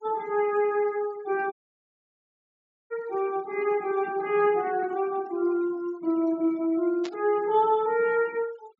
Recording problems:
treble cut off; nothing above 8 kHz
noise reduction artefacts; signal-to-artefact ratio 24 dB
dropout; at 1.5 s for 1.5 s
burst of static; at 7 s; peak -9 dB vs average level

